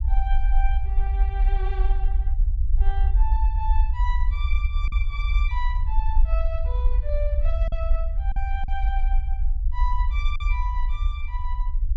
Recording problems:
low-frequency rumble; below 52 Hz, SNR -10 dB
packet loss; 1.8% of the sound replaced, filled with silence

